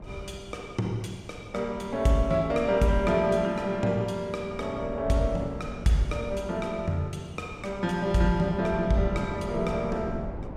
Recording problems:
wind on the microphone; below 360 Hz, SNR 13 dB

